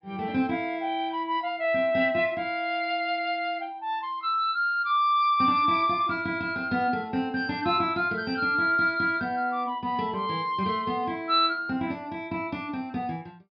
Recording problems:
treble missing; nothing above 5.5 kHz

